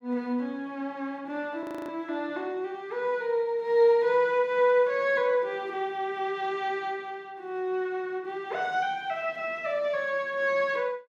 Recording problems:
audio freezing; at 1.5 s

